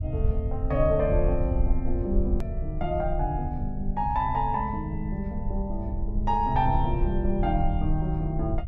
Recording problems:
rumble; below 68 Hz, SNR 3 dB
edit click; at 2.5 s

